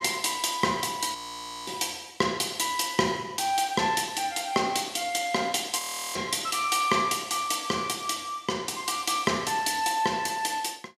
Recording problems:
audio freezing; at 1 s for 0.5 s and at 6 s

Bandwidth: 14.5 kHz